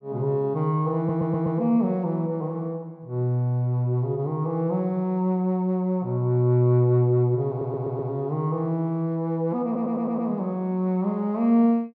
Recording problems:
audio stuttering; at 1 s, at 7.5 s and at 9.5 s

